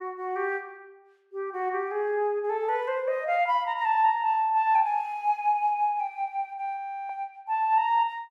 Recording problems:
audio freezing; at 7 s

